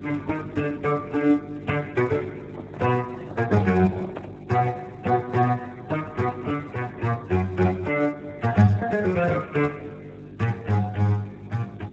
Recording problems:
codec artefacts; MP3, then Speex, log-spectral distance 5 dB
hum; 50 Hz, harmonics up to 500 Hz, SNR 17 dB
handling noise; from 2.5 to 4.5 s; peak -8 dB vs average level

